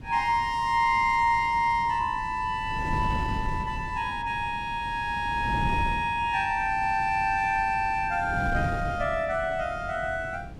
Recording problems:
wind on the microphone; below 210 Hz, SNR 11 dB

